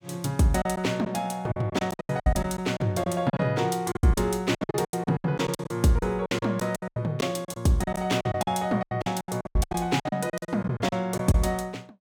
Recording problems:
packet loss; 18% of the sound replaced, filled with silence

